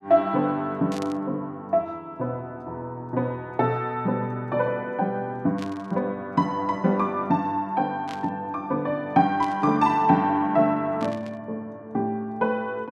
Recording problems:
burst of static; 5 times, first at 1 s; peak -10 dB vs average level

